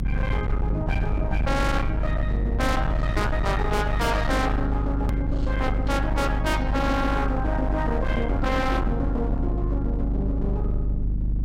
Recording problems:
distorted audio; hard clipping, signal-to-distortion ratio 8 dB
mains hum; 50 Hz, harmonics up to 300 Hz, SNR 0 dB
rumble; below 72 Hz, strongest tone 22 Hz, SNR 5 dB
click at an edit; at 5 s

